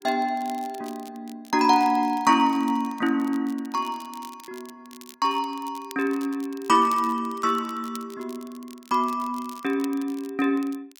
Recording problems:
crackling; vinyl, SNR 23 dB

